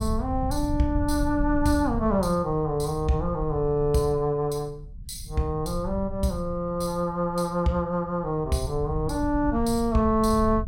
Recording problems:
low-frequency rumble; below 96 Hz, SNR 9 dB

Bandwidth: 16 kHz